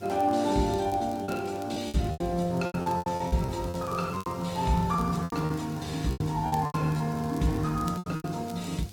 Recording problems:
lossy codec; Opus, log-spectral distance 3 dB, nothing above 15.5 kHz
hum; 50 Hz, harmonics up to 800 Hz, SNR 19 dB
background hiss; slope +2 dB per octave, SNR 24 dB
crackle; vinyl, SNR 24 dB
packet loss; 14% of the sound replaced, filled with repeated pitch periods

